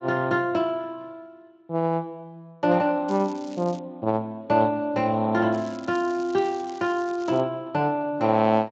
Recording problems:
lossy codec; Speex, log-spectral distance 3 dB
crackling; at 3 s and from 5.5 to 7.5 s; loose cable, SNR 24 dB

